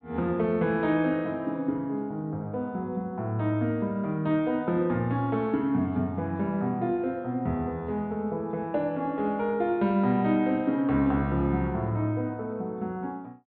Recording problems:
low-pass filter; nothing above 4.5 kHz

